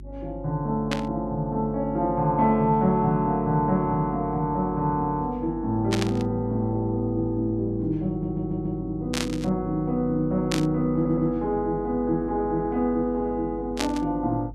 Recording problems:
electrical hum; 50 Hz, harmonics up to 400 Hz, SNR 16 dB
burst of static; 5 times, first at 1 s; peak +1 dB vs average level
audio stuttering; at 8 s and at 11 s

